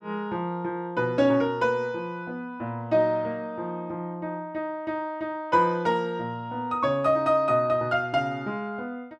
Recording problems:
none

